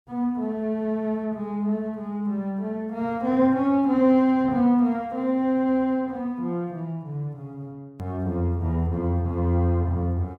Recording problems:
click at an edit; at 8 s

